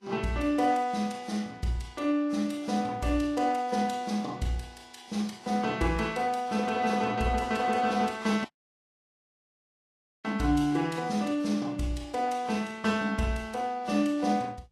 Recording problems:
lossy compression; Vorbis, log-spectral distance 3 dB, nothing above 12.3 kHz
dropout; at 8.5 s for 2 s

